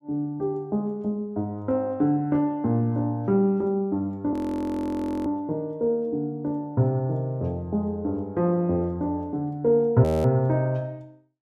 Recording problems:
audio freezing; at 4.5 s for 1 s and at 10 s

